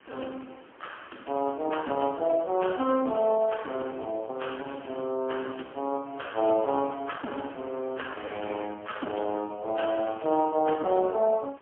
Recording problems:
phone line; 220 Hz to 3.2 kHz, AMR-NB, then MP3
wind on the microphone; below 2.2 kHz, SNR 22 dB

